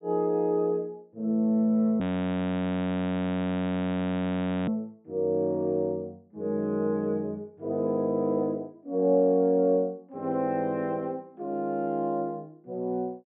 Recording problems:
treble missing; nothing above 4 kHz
audio freezing; at 2 s for 2.5 s

